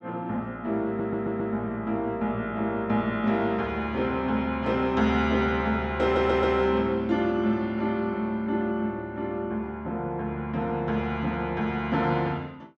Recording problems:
stutter; at 1 s and at 6 s

